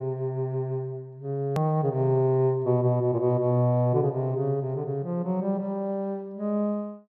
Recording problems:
click at an edit; at 1.5 s

